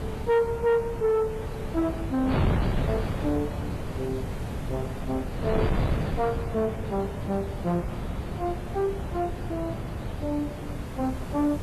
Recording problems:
lossy compression; MP3, log-spectral distance 2 dB, nothing above 10.7 kHz
distortion; soft clipping, signal-to-distortion ratio 10 dB
hiss; slope -1 dB per octave, SNR 24 dB
wind on the microphone; below 380 Hz, SNR 3 dB

